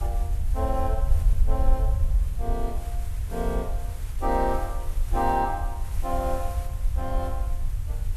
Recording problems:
hiss; slope -3 dB per octave, SNR 17 dB
low-frequency rumble; below 60 Hz, SNR -1 dB

